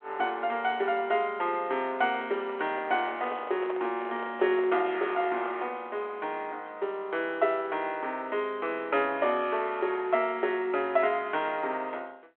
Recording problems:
telephone audio; 300 Hz to 3.4 kHz, G.726
microphone handling noise; from 2 to 5.5 s; peak -4 dB vs average level

